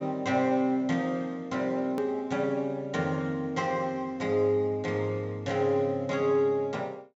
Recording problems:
treble cut off; nothing above 8 kHz
hard cut with a click; at 2 s

